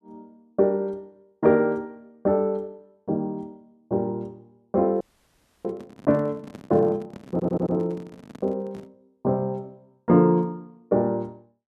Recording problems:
microphone handling noise; from 5 to 9 s; peak -11 dB vs average level
audio freezing; at 5 s for 0.5 s
audio stuttering; at 7.5 s

